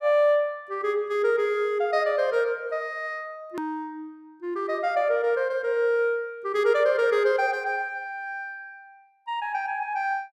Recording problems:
click at an edit; at 3.5 s

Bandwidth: 15 kHz